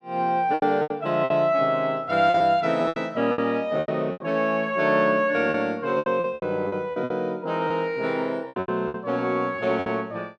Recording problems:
packet loss; 13% of the sound replaced, filled with repeated pitch periods

